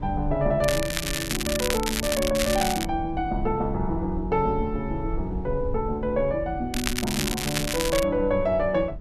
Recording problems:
rumble; below 72 Hz, SNR 10 dB
crackle; from 0.5 to 3 s and from 6.5 to 8 s; loose cable, SNR 3 dB

